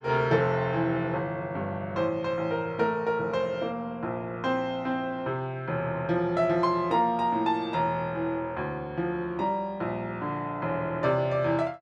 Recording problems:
none

